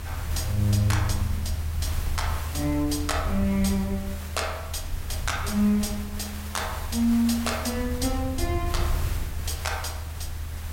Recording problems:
background hiss; slope -2 dB per octave, SNR 12 dB
rumble; below 82 Hz, strongest tone 78 Hz, SNR 4 dB

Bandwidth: 16 kHz